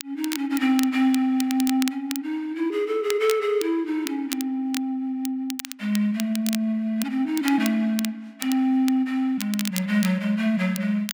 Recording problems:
crackling; vinyl, SNR 11 dB

